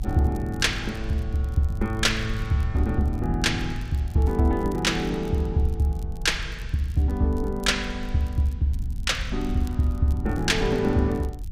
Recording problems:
rumble; below 80 Hz, SNR 9 dB
crackle; vinyl, SNR 29 dB

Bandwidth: 15.5 kHz